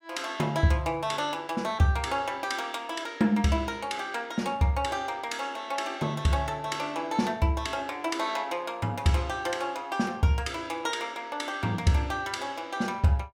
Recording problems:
none

